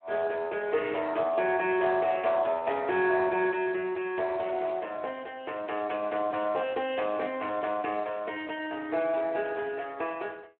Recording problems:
telephone audio; 320 Hz to 3.1 kHz, Speex

